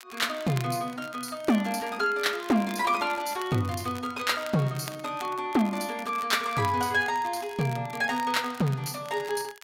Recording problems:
crackle; vinyl, SNR 18 dB

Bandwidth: 16 kHz